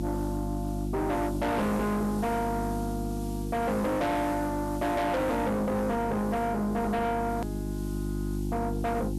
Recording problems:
distortion; soft clipping, signal-to-distortion ratio 7 dB
electrical hum; 50 Hz, harmonics up to 700 Hz, SNR 5 dB
background hiss; SNR 20 dB
click at an edit; at 7.5 s

